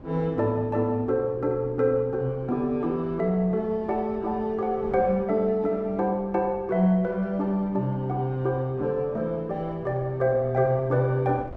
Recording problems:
wind on the microphone; below 470 Hz, SNR 21 dB

